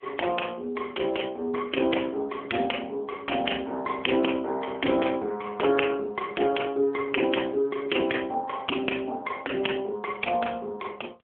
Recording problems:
telephone audio; 240 Hz to 3.3 kHz, AMR-NB

